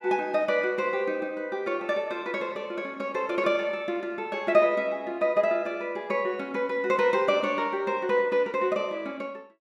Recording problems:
none

